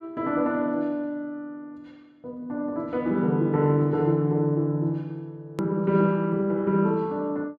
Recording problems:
hard cut with a click; at 5.5 s

